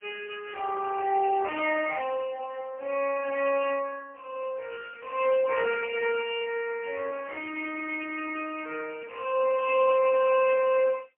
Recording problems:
telephone audio; 340 Hz to 2.7 kHz, AMR-NB, then MP3

